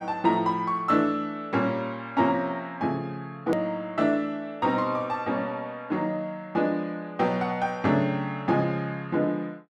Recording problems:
hard cut with a click; at 3.5 s

